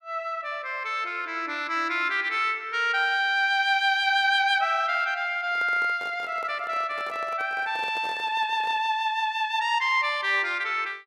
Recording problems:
microphone handling noise; from 5.5 to 9 s; peak -12 dB vs average level

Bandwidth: 14.5 kHz